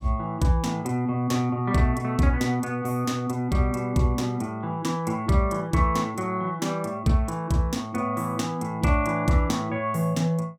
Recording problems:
none

